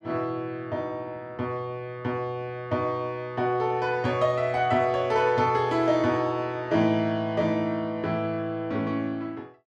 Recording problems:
none

